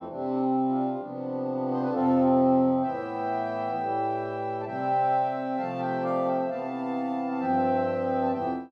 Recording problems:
none

